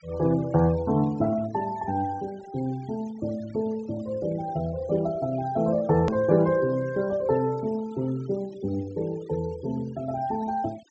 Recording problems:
treble missing; nothing above 8 kHz
noise reduction artefacts; signal-to-artefact ratio 23 dB
click at an edit; at 6 s

